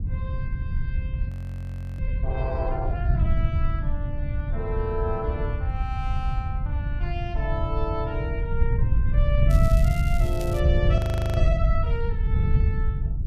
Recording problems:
wind noise; below 98 Hz, SNR -7 dB
audio freezing; at 1.5 s for 0.5 s and at 11 s
crackling; from 9.5 to 11 s; loose cable, SNR 11 dB

